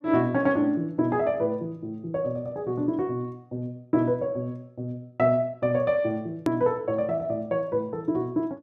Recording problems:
edit click; at 6.5 s

